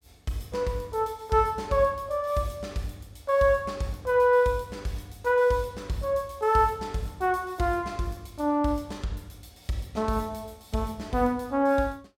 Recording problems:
none

